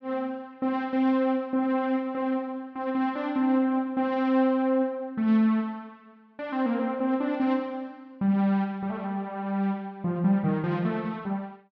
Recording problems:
none

